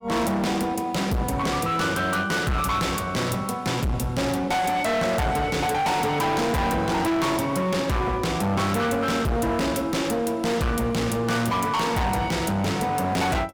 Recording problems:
distorted audio; hard clipping, uneven, signal-to-distortion ratio 6 dB

